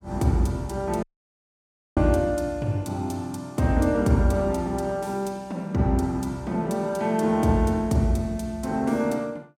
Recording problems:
dropout; at 1 s for 1 s

